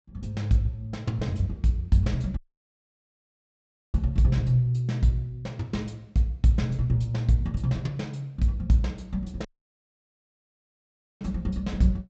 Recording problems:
treble missing; nothing above 8 kHz
dropout; at 2.5 s for 1.5 s and at 9.5 s for 2 s

